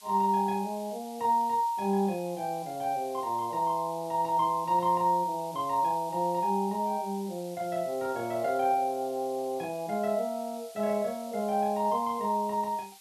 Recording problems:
background hiss; slope +5 dB per octave, SNR 21 dB

